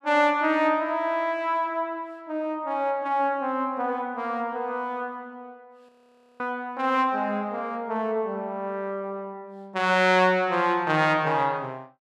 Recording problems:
frozen audio; at 6 s for 0.5 s

